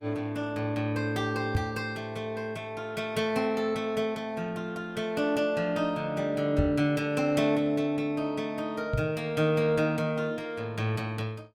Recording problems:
lossy codec; Opus, log-spectral distance 2 dB, nothing above 19 kHz
knock on the microphone; at 1.5 s, at 6.5 s and at 9 s; peak +6 dB vs average level

